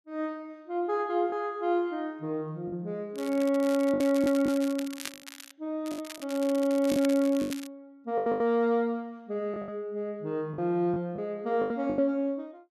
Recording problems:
lost packets; 7% of the sound replaced, filled with the last packet
crackling; from 3 to 5.5 s and from 6 to 7.5 s; loose cable, SNR 14 dB

